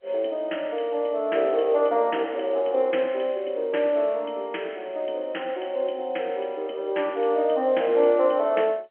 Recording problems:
telephone audio; 240 Hz to 3.2 kHz, G.711

